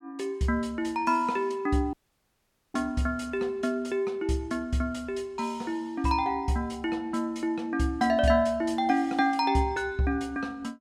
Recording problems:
dropout; at 2 s for 1 s

